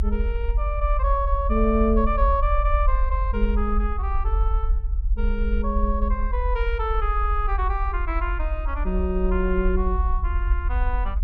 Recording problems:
rumble; below 58 Hz, strongest tone 44 Hz, SNR -1 dB

